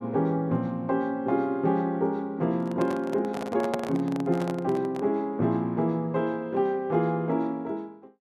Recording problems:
handling noise; from 2.5 to 5 s; peak 0 dB vs average level

